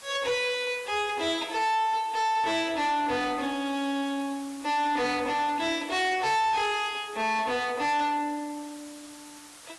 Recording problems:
codec artefacts; AAC, log-spectral distance 5 dB, nothing above 11.3 kHz
distorted audio; soft clipping, signal-to-distortion ratio 10 dB
background hiss; slope 0 dB per octave, SNR 21 dB

